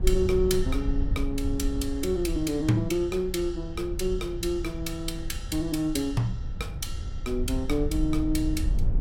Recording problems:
low-frequency rumble; below 72 Hz, SNR 5 dB

